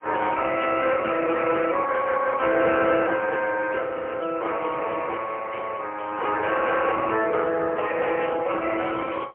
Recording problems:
phone line; 280 Hz to 3 kHz, AMR-NB, then MP3
audio freezing; at 4 s

